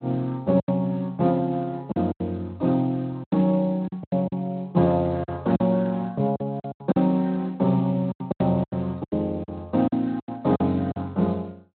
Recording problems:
lossy compression; Speex, log-spectral distance 2 dB, nothing above 4.1 kHz
lost packets; 11% of the sound replaced, filled with silence

